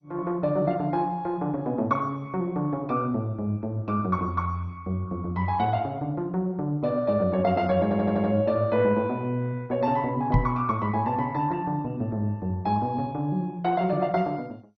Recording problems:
codec artefacts; MP2, log-spectral distance 2 dB, nothing above 5.8 kHz
audio stuttering; at 8 s
microphone thump; at 10 s; peak +8 dB vs average level

